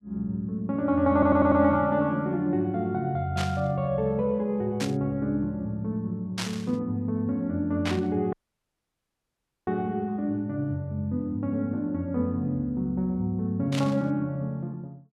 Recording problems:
stutter; at 1 s
burst of static; 5 times, first at 3.5 s; peak -1 dB vs average level
audio cutting out; at 8.5 s for 1.5 s

